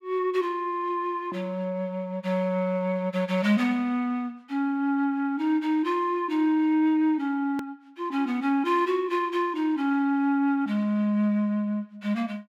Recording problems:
hard cut with a click; at 7.5 s

